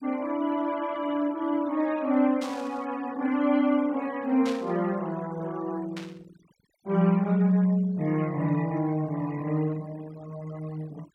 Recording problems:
denoising artefacts; signal-to-artefact ratio 23 dB
burst of static; at 2.5 s, at 4.5 s and at 6 s; peak -7 dB vs average level

